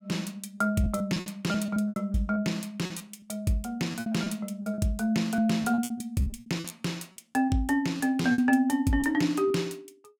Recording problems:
packet loss; 11% of the sound replaced, filled with repeated pitch periods

